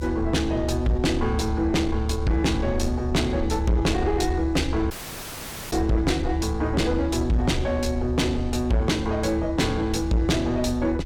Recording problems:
distortion; soft clipping, signal-to-distortion ratio 8 dB
low-frequency rumble; below 76 Hz, strongest tone 72 Hz, SNR 6 dB
dropout; at 5 s for 1 s

